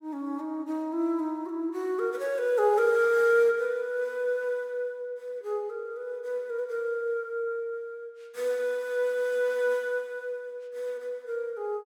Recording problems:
none

